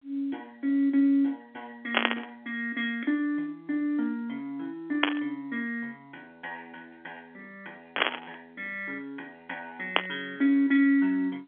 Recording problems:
phone line; 240 Hz to 3.5 kHz, G.711
burst of static; 4 times, first at 2 s; peak +10 dB vs average level

